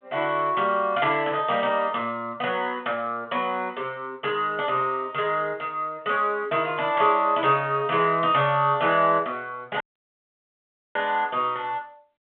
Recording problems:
telephone audio; 190 Hz to 3.4 kHz, G.726
dropout; at 10 s for 1 s

